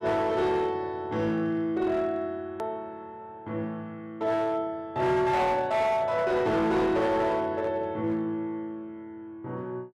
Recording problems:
distorted audio; hard clipping, signal-to-distortion ratio 11 dB
click at an edit; at 2.5 s

